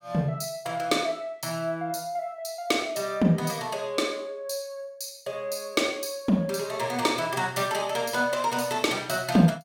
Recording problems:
none

